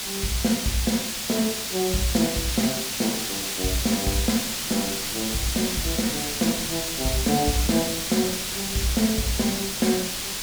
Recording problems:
hiss; slope +1 dB per octave, SNR 0 dB
wind on the microphone; below 260 Hz, SNR 19 dB

